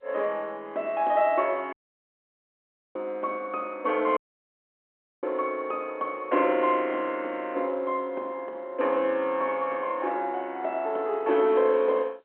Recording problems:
phone line; 280 Hz to 3.4 kHz, G.711
audio cutting out; at 1.5 s for 1 s and at 4 s for 1 s

